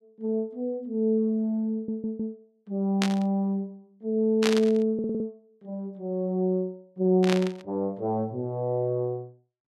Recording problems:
audio stuttering; at 1.5 s and at 5 s
burst of static; at 3 s, at 4.5 s and at 7 s; peak +4 dB vs average level

